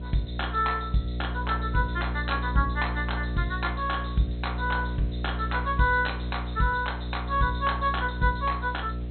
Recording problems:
low-pass filter; nothing above 4.2 kHz
hum; 60 Hz, harmonics up to 660 Hz, SNR 5 dB
background hiss; SNR 27 dB

